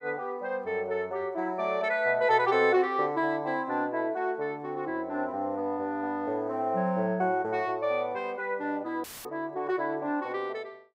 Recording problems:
audio cutting out; at 9 s; filled with static

